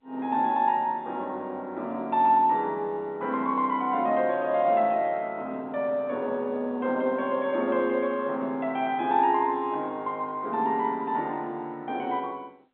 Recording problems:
telephone audio; 190 Hz to 3.8 kHz, G.711

